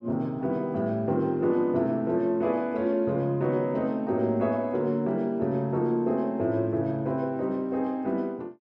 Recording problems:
none

